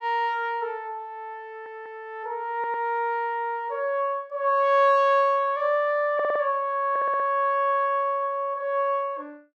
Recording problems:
audio stuttering; 4 times, first at 1.5 s

